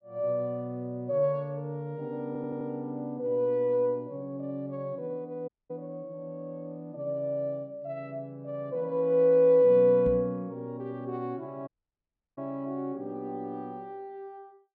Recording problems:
stutter; at 2.5 s
dropout; at 5.5 s and at 12 s for 0.5 s
knock on the microphone; at 10 s; peak -1 dB vs average level

